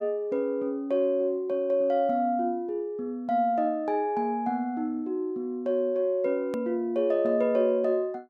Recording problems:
edit click; at 6.5 s

